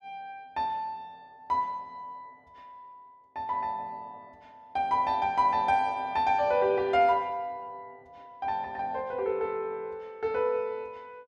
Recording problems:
none

